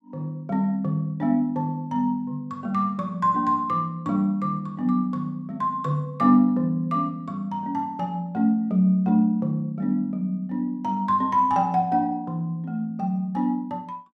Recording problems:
none

